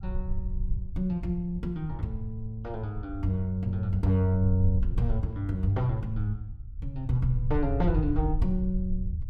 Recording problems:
rumble; below 76 Hz, SNR 6 dB

